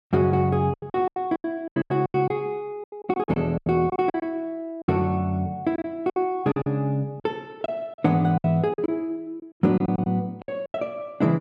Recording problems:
lost packets; 15% of the sound replaced, filled with silence

